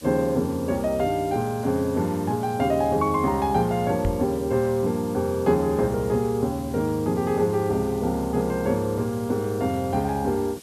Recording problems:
background hiss; slope +1 dB per octave, SNR 21 dB
microphone thump; at 4 s; peak 0 dB vs average level

